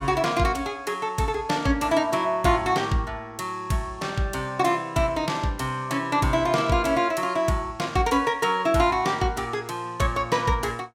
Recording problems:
none

